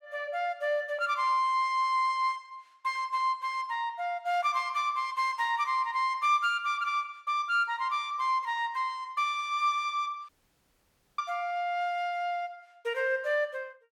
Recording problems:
dropout; at 10 s for 1 s

